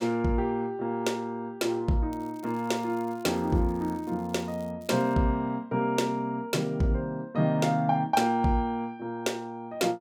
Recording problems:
crackle; from 2 to 4.5 s and at 5 s; loose cable, SNR 28 dB

